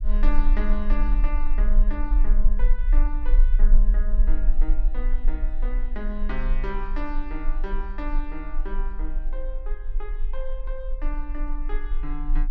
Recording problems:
low-frequency rumble; below 34 Hz, strongest tone 24 Hz, SNR -10 dB

